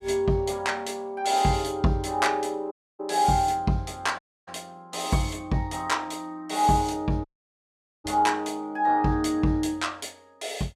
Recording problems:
audio cutting out; at 2.5 s, at 4 s and at 7.5 s for 1 s

